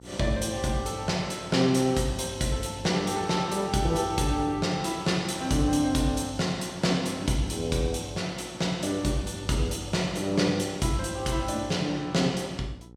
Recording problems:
electrical hum; 60 Hz, harmonics up to 900 Hz, SNR 23 dB

